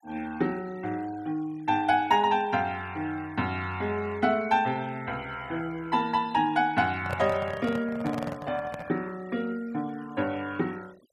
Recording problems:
denoising artefacts; signal-to-artefact ratio 23 dB
microphone handling noise; from 7 to 9 s; peak -1 dB vs average level

